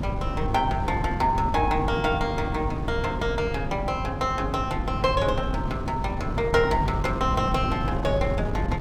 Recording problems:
electrical hum; 50 Hz, harmonics up to 300 Hz, SNR 8 dB
wind noise; below 260 Hz, SNR 5 dB

